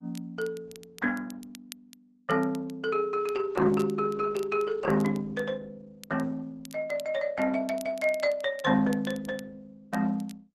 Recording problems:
lossy codec; Opus, log-spectral distance 3 dB, nothing above 11.3 kHz
crackling; vinyl, SNR 22 dB

